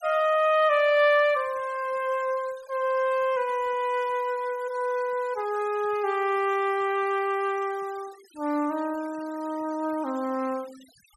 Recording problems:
denoising artefacts; signal-to-artefact ratio 24 dB

